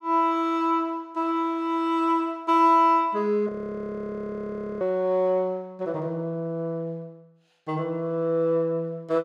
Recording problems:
frozen audio; at 3.5 s for 1.5 s

